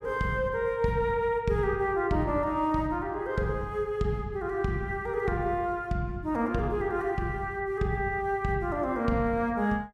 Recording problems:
none

